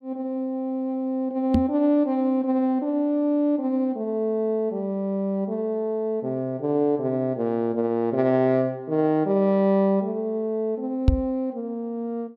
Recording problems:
microphone bump; at 1.5 s and at 11 s; peak +9 dB vs average level

